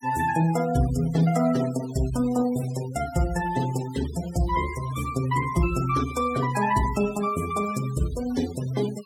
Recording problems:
noise reduction artefacts; signal-to-artefact ratio 15 dB

